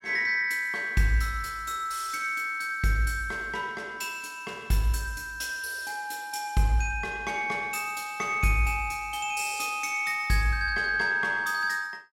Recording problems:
none

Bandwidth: 16 kHz